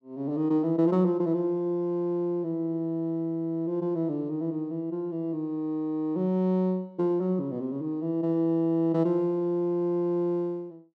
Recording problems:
none

